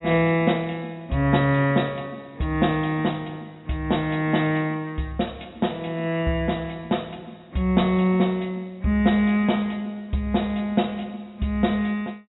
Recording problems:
low-pass filter; nothing above 3.8 kHz

